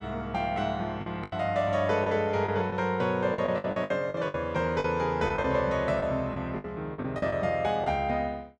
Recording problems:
lost packets; 10% of the sound replaced, filled with the last packet

